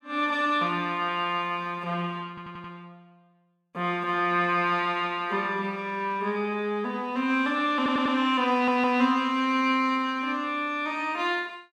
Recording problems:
stutter; at 2.5 s, at 8 s and at 8.5 s

